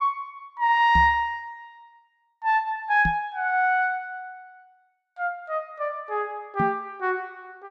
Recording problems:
microphone bump; at 1 s, at 3 s and at 6.5 s; peak 0 dB vs average level

